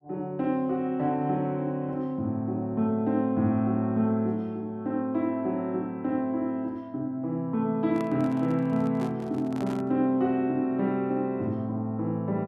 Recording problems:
handling noise; from 8 to 10 s; peak -8 dB vs average level

